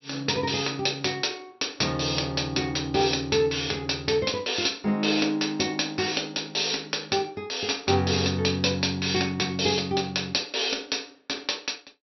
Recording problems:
treble missing; nothing above 5.8 kHz

